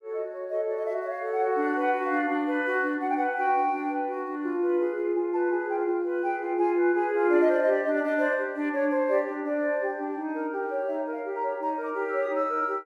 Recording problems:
none

